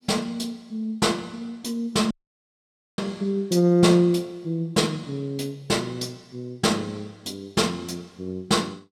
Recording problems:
audio cutting out; at 2 s for 1 s

